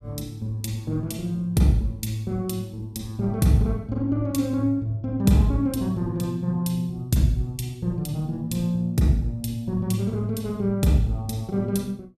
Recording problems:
none

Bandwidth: 14.5 kHz